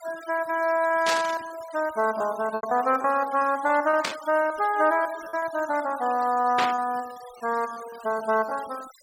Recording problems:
noise reduction artefacts; signal-to-artefact ratio 19 dB
lost packets; 9% of the sound replaced, filled with repeated pitch periods
burst of static; at 1 s, at 4 s and at 6.5 s; peak +3 dB vs average level

